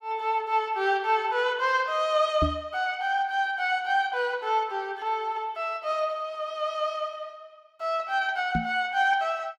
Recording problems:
microphone thump; at 2.5 s and at 8.5 s; peak +3 dB vs average level

